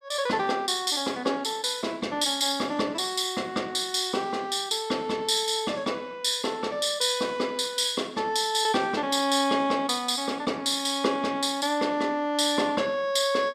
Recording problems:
none

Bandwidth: 14.5 kHz